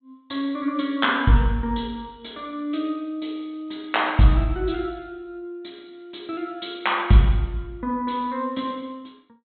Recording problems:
treble missing; nothing above 4 kHz

